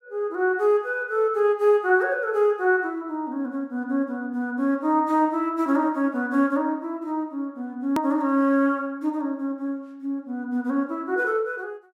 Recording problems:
click at an edit; at 8 s

